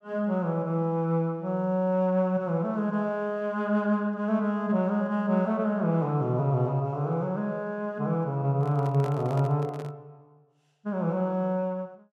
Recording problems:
microphone handling noise; from 8.5 to 10 s; peak -8 dB vs average level

